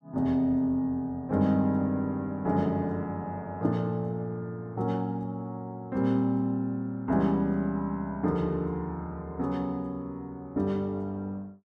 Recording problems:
none

